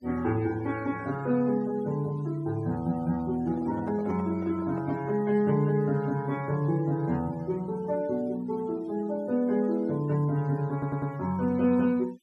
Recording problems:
denoising artefacts; signal-to-artefact ratio 23 dB
handling noise; from 3.5 to 5 s; peak -10 dB vs average level
audio stuttering; at 11 s

